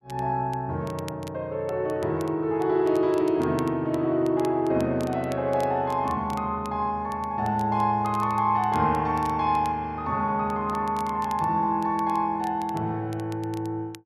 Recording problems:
crackle; vinyl, SNR 24 dB

